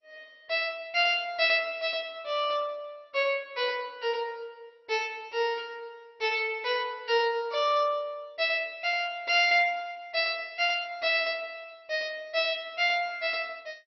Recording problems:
lossy compression; MP2, log-spectral distance 3 dB, nothing above 4.9 kHz

